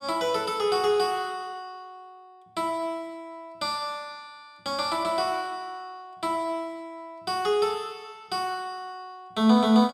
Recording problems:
none

